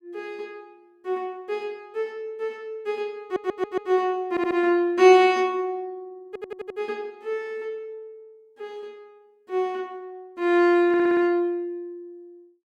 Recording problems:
stutter; 4 times, first at 3 s

